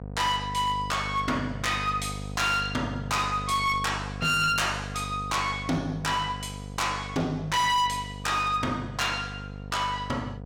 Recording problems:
distorted audio; hard clipping, signal-to-distortion ratio 11 dB
hum; 50 Hz, harmonics up to 1 kHz, SNR 11 dB

